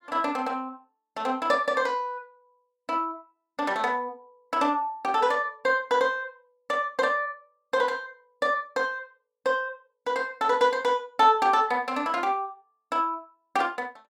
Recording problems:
none

